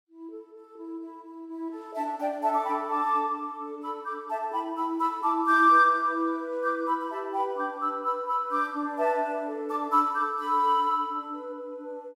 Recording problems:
none

